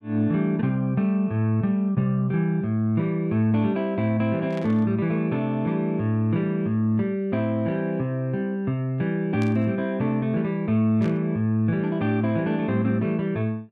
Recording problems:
static burst; at 4.5 s, at 9.5 s and at 11 s; peak -13 dB vs average level

